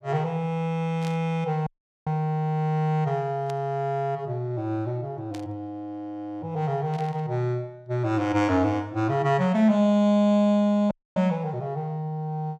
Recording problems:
burst of static; 4 times, first at 1 s; peak -12 dB vs average level
dropout; at 1.5 s and at 11 s

